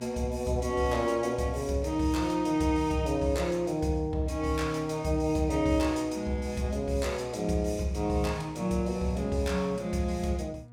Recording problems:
electrical hum; 60 Hz, harmonics up to 1.2 kHz, SNR 22 dB

